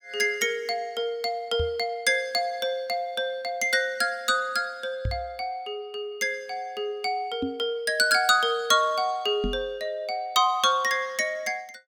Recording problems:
knock on the microphone; 4 times, first at 1.5 s; peak -1 dB vs average level

